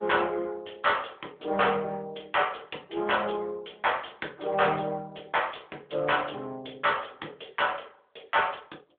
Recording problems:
phone line; 260 Hz to 3.5 kHz, AMR-NB

